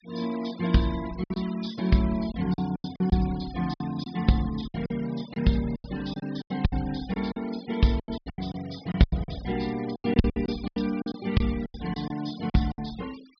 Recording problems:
low-pass filter; nothing above 5.5 kHz
denoising artefacts; signal-to-artefact ratio 18 dB
lost packets; 14% of the sound replaced, filled with silence

